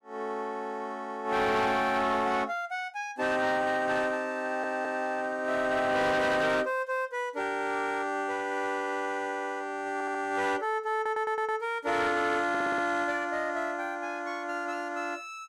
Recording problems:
distorted audio; soft clipping, signal-to-distortion ratio 11 dB
audio stuttering; 4 times, first at 4.5 s

